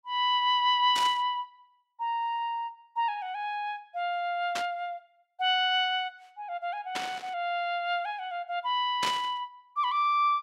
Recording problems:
burst of static; 4 times, first at 1 s; peak +1 dB vs average level

